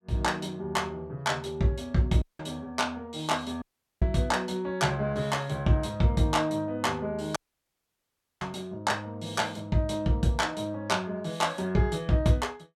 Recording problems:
audio cutting out; at 2 s, at 3.5 s and at 7.5 s for 1 s

